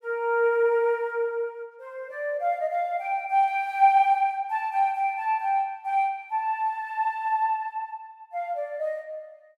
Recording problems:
none

